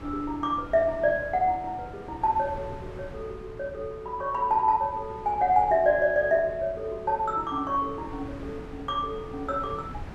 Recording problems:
wind on the microphone; below 470 Hz, SNR 17 dB

